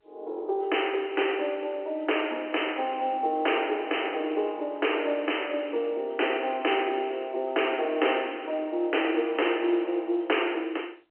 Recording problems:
phone line; 300 Hz to 3.2 kHz, G.711

